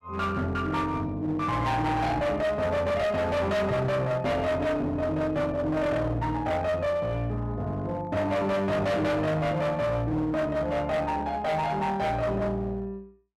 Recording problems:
distortion; hard clipping, uneven, signal-to-distortion ratio 7 dB

